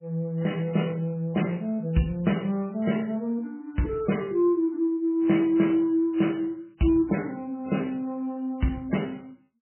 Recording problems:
lossy compression; MP3, log-spectral distance 3 dB, nothing above 3 kHz

